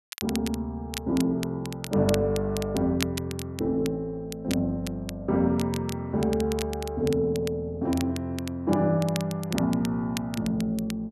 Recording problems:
crackling; vinyl, SNR 13 dB

